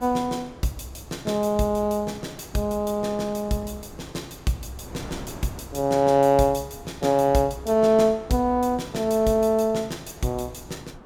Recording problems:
wind noise; below 700 Hz, SNR 20 dB

